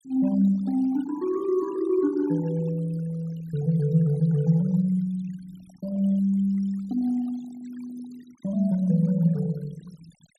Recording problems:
denoising artefacts; signal-to-artefact ratio 24 dB

